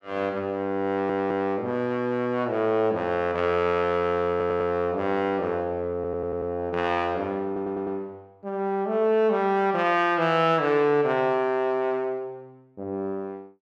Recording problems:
audio stuttering; 4 times, first at 1 s

